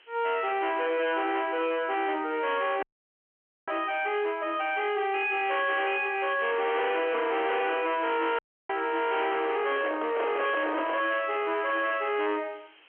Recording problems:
phone line; 260 Hz to 3.3 kHz, G.711
distortion; hard clipping, signal-to-distortion ratio 6 dB
background hiss; SNR 28 dB
dropout; at 3 s for 1 s and at 8.5 s
microphone handling noise; from 9.5 to 11 s; peak -1 dB vs average level

